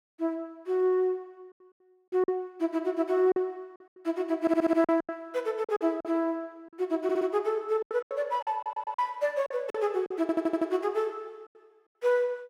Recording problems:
packet loss; 8% of the sound replaced, filled with silence
stutter; 4 times, first at 4.5 s

